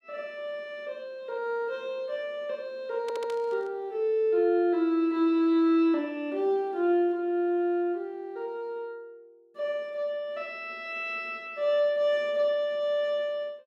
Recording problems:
audio stuttering; at 3 s
burst of static; at 3 s; peak -12 dB vs average level

